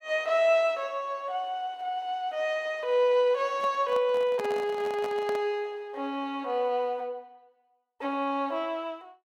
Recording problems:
microphone handling noise; from 3.5 to 5.5 s; peak -5 dB vs average level

